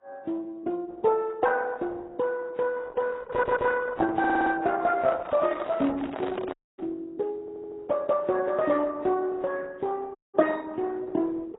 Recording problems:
lossy codec; Opus, then AAC, log-spectral distance 3 dB, nothing above 3.8 kHz
audio stuttering; at 3.5 s, at 4 s and at 7.5 s
handling noise; from 5 to 7 s; peak -3 dB vs average level
dropout; at 6.5 s and at 10 s

